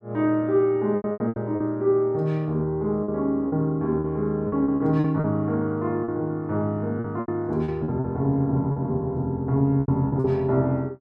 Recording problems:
lost packets; 10% of the sound replaced, filled with repeated pitch periods

